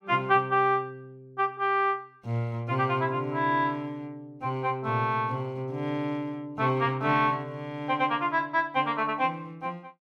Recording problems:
none

